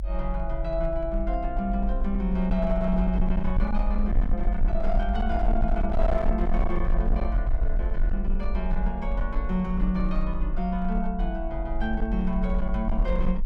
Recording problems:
distortion; hard clipping, uneven, signal-to-distortion ratio 11 dB
rumble; below 46 Hz, SNR 0 dB

